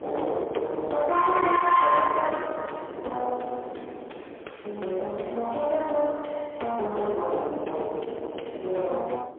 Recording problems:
phone line; 340 Hz to 3.3 kHz, AMR-NB, then MP3
distorted audio; soft clipping, signal-to-distortion ratio 10 dB
wind noise; below 1.1 kHz, SNR 9 dB

